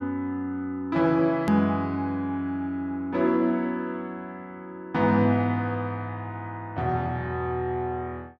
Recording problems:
hard cut with a click; at 1.5 s

